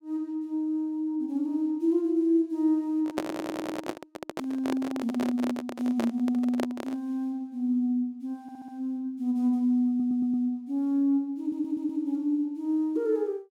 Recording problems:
handling noise; from 3 to 7 s; peak +2 dB vs average level
audio stuttering; 4 times, first at 3 s

